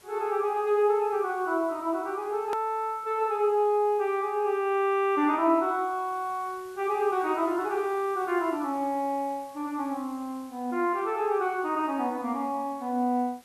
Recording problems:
background hiss; slope -1 dB per octave, SNR 27 dB
edit click; at 2.5 s

